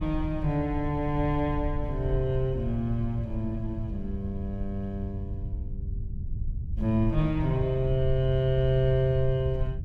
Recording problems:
low-frequency rumble; below 86 Hz, SNR 7 dB

